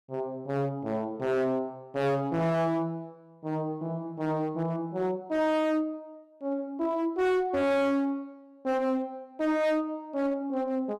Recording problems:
distortion; hard clipping, signal-to-distortion ratio 8 dB

